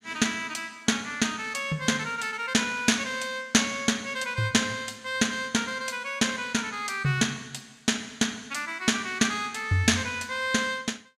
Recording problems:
none

